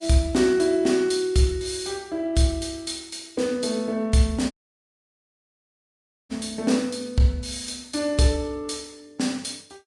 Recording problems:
lossy compression; Vorbis, log-spectral distance 5 dB, nothing above 10.4 kHz
audio cutting out; at 4.5 s for 2 s

